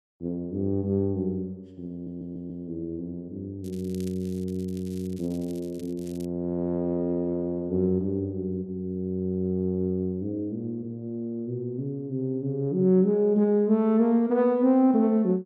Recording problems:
stutter; at 2 s
crackling; from 3.5 to 6.5 s; loose cable, SNR 25 dB

